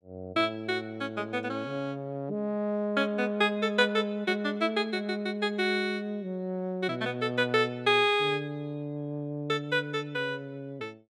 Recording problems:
none

